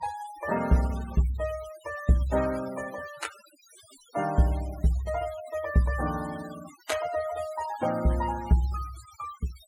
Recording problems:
noise reduction artefacts; signal-to-artefact ratio 16 dB

